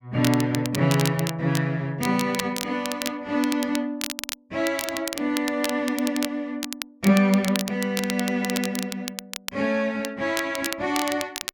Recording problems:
crackle; vinyl, SNR 8 dB

